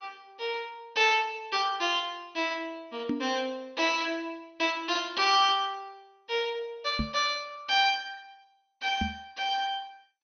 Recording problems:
lossy compression; MP2, log-spectral distance 3 dB, nothing above 5.8 kHz
microphone bump; at 3 s, at 7 s and at 9 s; peak +1 dB vs average level

